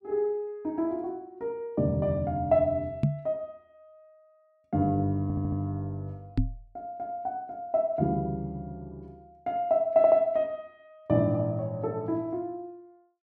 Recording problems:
microphone thump; at 3 s and at 6.5 s; peak +7 dB vs average level
stutter; at 5 s and at 10 s

